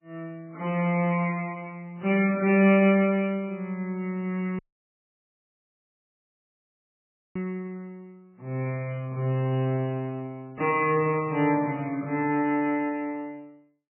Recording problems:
lossy compression; MP3, log-spectral distance 2 dB, nothing above 2.5 kHz
audio cutting out; at 4.5 s for 3 s

